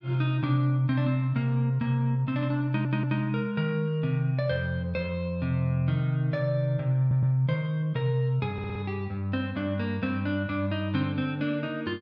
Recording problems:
audio stuttering; at 2.5 s, at 7 s and at 8.5 s

